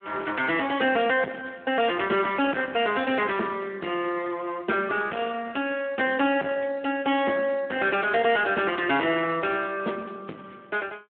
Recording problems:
phone line; 240 Hz to 3.4 kHz, Speex
distortion; soft clipping, signal-to-distortion ratio 9 dB

